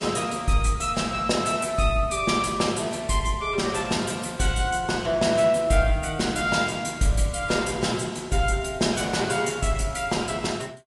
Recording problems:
codec artefacts; Vorbis, log-spectral distance 5 dB, nothing above 10.7 kHz

